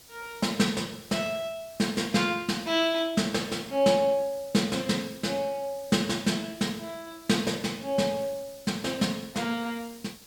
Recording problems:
background hiss; SNR 21 dB

